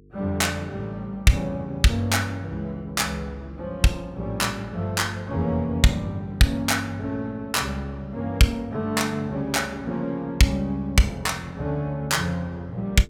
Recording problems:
hum; 50 Hz, harmonics up to 450 Hz, SNR 25 dB

